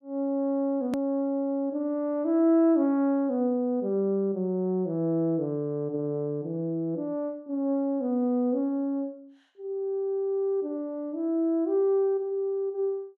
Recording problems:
click at an edit; at 1 s

